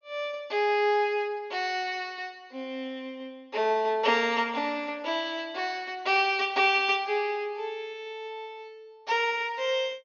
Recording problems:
low-pass filter; nothing above 6.8 kHz

